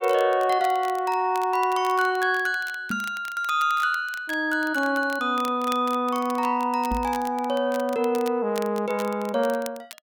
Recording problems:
crackle; vinyl, SNR 19 dB
microphone bump; at 3 s and at 7 s; peak -2 dB vs average level

